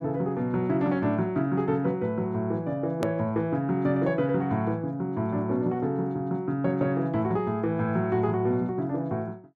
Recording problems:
hard cut with a click; at 3 s

